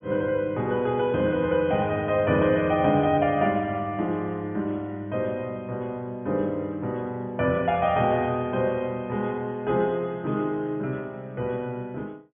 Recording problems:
treble missing; nothing above 3.4 kHz

